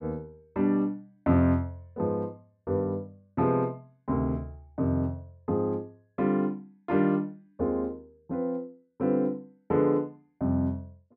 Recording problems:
none

